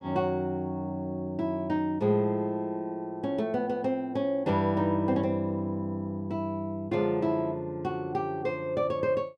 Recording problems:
none

